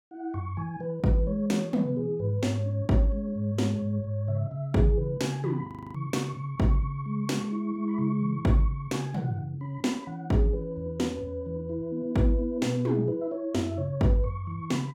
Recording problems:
audio freezing; at 5.5 s

